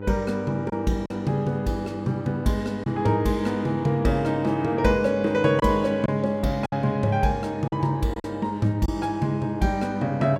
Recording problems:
hum; 50 Hz, harmonics up to 1.4 kHz, SNR 12 dB
packet loss; 3% of the sound replaced, filled with silence

